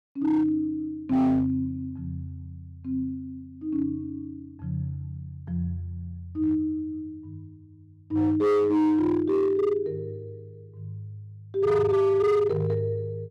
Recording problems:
distortion; hard clipping, signal-to-distortion ratio 11 dB

